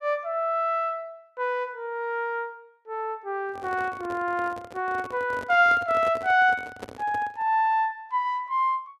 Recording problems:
handling noise; from 3.5 to 7.5 s; peak -7 dB vs average level

